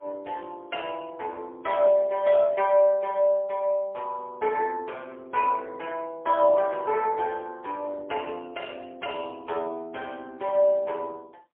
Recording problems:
phone line; 340 Hz to 3.3 kHz, AMR-NB, then MP3

